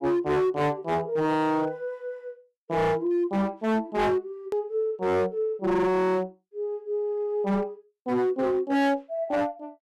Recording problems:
distortion; hard clipping, signal-to-distortion ratio 8 dB
hard cut with a click; at 4.5 s

